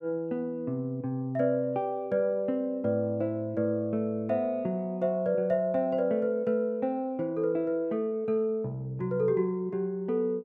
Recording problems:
none

